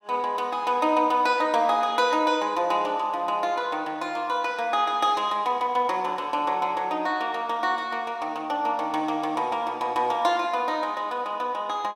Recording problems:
none

